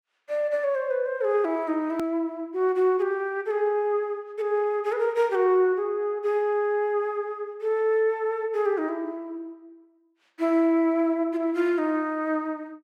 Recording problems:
hard cut with a click; at 2 s

